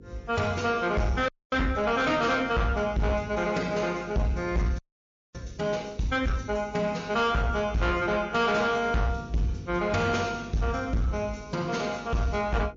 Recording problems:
lossy codec; MP3, log-spectral distance 2 dB, nothing above 6.3 kHz
distorted audio; soft clipping, signal-to-distortion ratio 10 dB
hum; 50 Hz, harmonics up to 500 Hz, SNR 20 dB
audio freezing; at 1.5 s and at 5 s for 0.5 s

